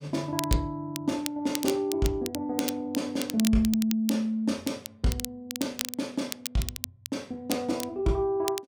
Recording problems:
crackle; vinyl, SNR 8 dB

